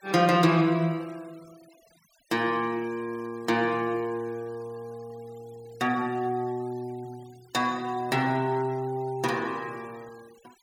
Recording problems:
noise reduction artefacts; signal-to-artefact ratio 26 dB

